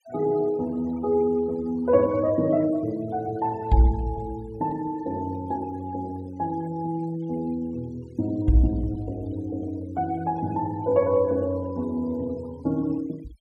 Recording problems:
denoising artefacts; signal-to-artefact ratio 25 dB

